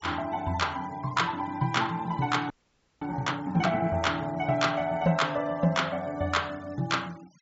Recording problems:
treble cut off; nothing above 7.5 kHz
noise reduction artefacts; signal-to-artefact ratio 24 dB
audio freezing; at 2.5 s for 0.5 s

